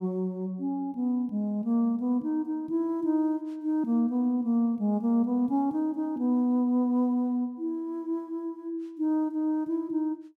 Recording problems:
none

